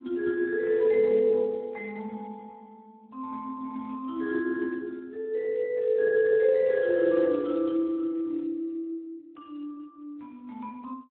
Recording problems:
telephone audio; 280 Hz to 3.8 kHz, Speex

